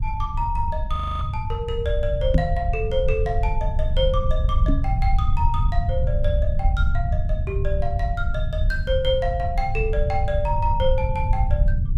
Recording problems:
rumble; below 82 Hz, SNR -2 dB
audio freezing; at 1 s
microphone thump; at 2.5 s and at 4.5 s; peak +8 dB vs average level

